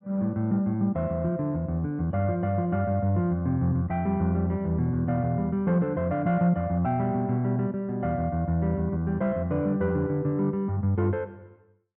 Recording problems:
none

